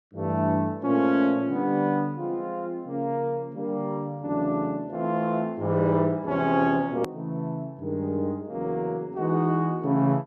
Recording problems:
edit click; at 7 s

